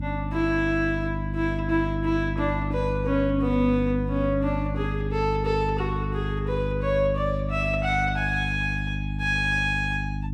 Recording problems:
hum; 50 Hz, harmonics up to 300 Hz, SNR 3 dB

